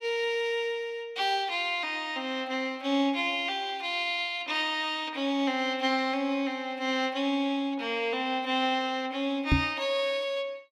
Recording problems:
knock on the microphone; at 9.5 s; peak +8 dB vs average level

